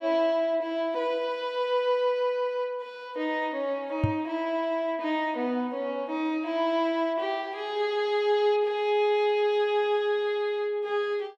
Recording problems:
knock on the microphone; at 4 s; peak +6 dB vs average level

